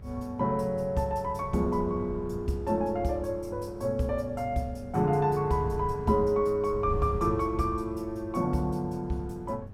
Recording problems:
hum; 50 Hz, harmonics up to 600 Hz, SNR 18 dB
wind noise; below 140 Hz, SNR 13 dB

